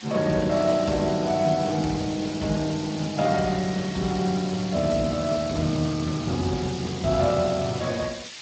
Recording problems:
lossy compression; Opus, then Speex, log-spectral distance 16 dB
hiss; SNR 13 dB

